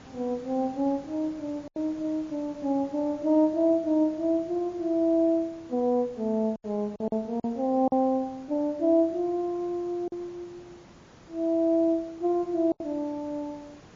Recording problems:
lossy compression; MP3, log-spectral distance 2 dB
background hiss; slope -5 dB per octave, SNR 24 dB
lost packets; 3% of the sound replaced, filled with silence

